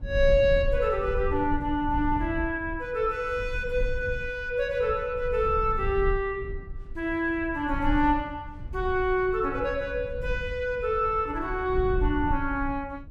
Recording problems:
rumble; below 66 Hz, SNR 9 dB

